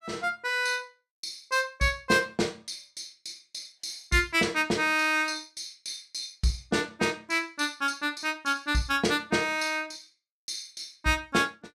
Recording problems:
none

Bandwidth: 14.5 kHz